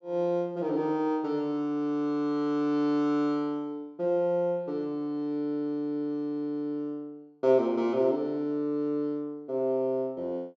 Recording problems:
low-pass filter; nothing above 8 kHz

